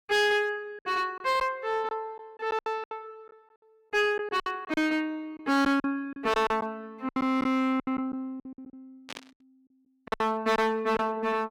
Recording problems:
distortion; hard clipping, uneven, signal-to-distortion ratio 10 dB
lost packets; 11% of the sound replaced, filled with silence
burst of static; at 9 s; peak -6 dB vs average level

